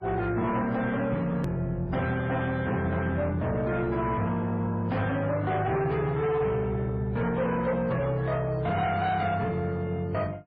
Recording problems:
codec artefacts; MP3, then MP3, log-spectral distance 2 dB, nothing above 13.1 kHz
distortion; soft clipping, signal-to-distortion ratio 10 dB
click at an edit; at 1.5 s

